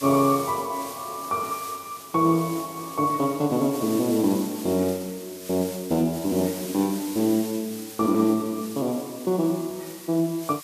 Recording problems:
hiss; slope +2 dB per octave, SNR 13 dB

